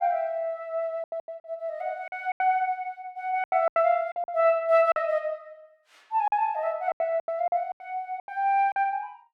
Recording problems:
packet loss; 12% of the sound replaced, filled with silence

